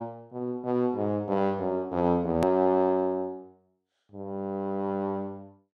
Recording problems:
click at an edit; at 2.5 s

